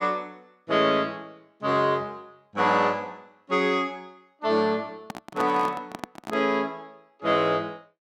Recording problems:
microphone handling noise; from 5 to 6.5 s; peak -3 dB vs average level

